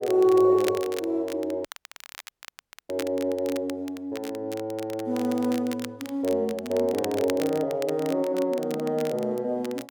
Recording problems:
crackle; vinyl, SNR 16 dB
dropout; at 1.5 s for 1 s

